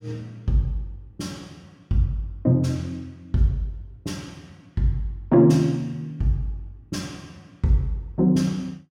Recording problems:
none

